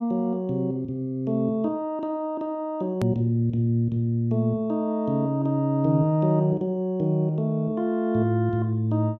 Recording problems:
hard cut with a click; at 3 s

